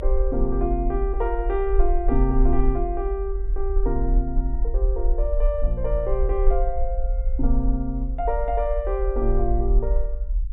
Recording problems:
treble cut off; nothing above 4 kHz
rumble; below 46 Hz, SNR -1 dB

